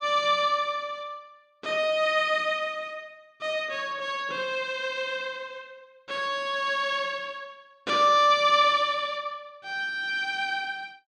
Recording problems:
none

